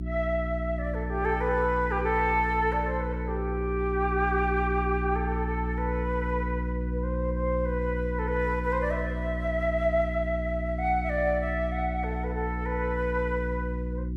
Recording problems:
hum; 60 Hz, harmonics up to 360 Hz, SNR 3 dB

